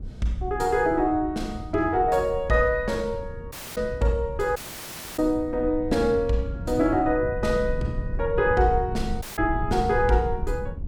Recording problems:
low-frequency rumble; below 100 Hz, SNR 10 dB
audio cutting out; at 3.5 s, at 4.5 s for 0.5 s and at 9 s

